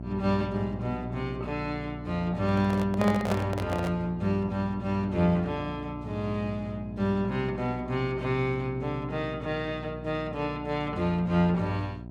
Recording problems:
hum; 60 Hz, harmonics up to 960 Hz, SNR 10 dB
handling noise; from 2.5 to 4 s; peak +2 dB vs average level

